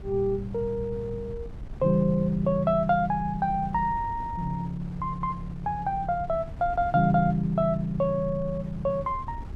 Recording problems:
wind noise; below 130 Hz, SNR 14 dB

